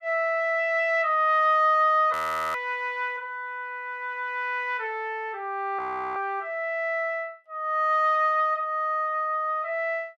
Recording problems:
audio freezing; at 2 s and at 6 s

